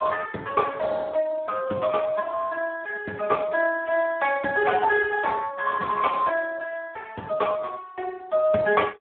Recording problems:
phone line; 240 Hz to 2.2 kHz, Speex

